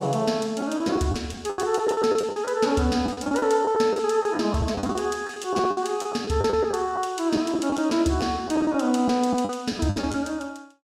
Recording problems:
lost packets; 13% of the sound replaced, filled with the last packet

